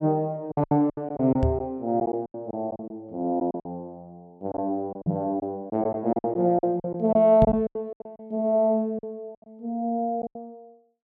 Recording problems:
packet loss; 12% of the sound replaced, filled with silence
microphone bump; at 1.5 s, at 5 s and at 7.5 s; peak +6 dB vs average level

